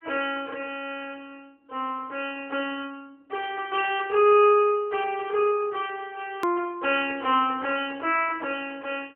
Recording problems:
phone line; 300 Hz to 3.3 kHz, AMR-NB
edit click; at 6.5 s

